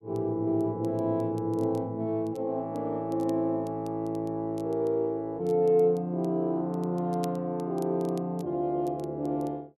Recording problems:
crackle; vinyl, SNR 29 dB

